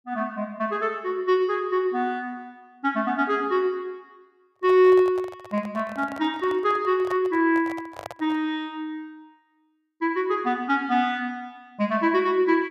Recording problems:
microphone handling noise; from 4.5 to 8.5 s; peak -8 dB vs average level

